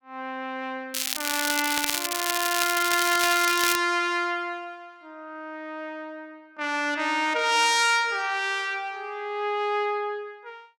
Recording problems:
crackle; from 1 to 4 s; loose cable, SNR 2 dB

